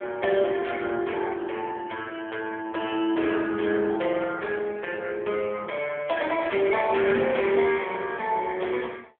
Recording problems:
telephone audio; 260 Hz to 2.8 kHz, AMR-NB

